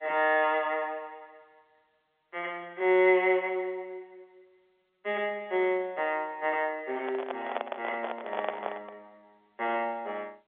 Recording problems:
telephone audio; 320 Hz to 3.5 kHz, G.711
handling noise; from 7 to 9 s; peak +1 dB vs average level

